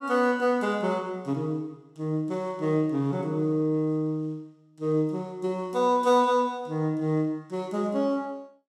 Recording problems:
none

